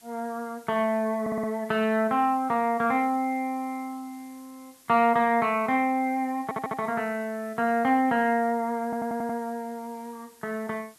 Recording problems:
background hiss; slope 0 dB per octave, SNR 27 dB
audio stuttering; at 1 s, at 6.5 s and at 9 s

